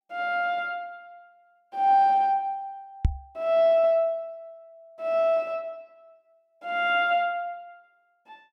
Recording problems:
knock on the microphone; at 3 s; peak +5 dB vs average level

